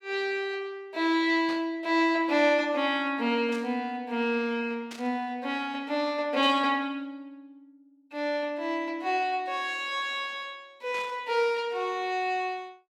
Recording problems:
static burst; 5 times, first at 1.5 s; peak -9 dB vs average level

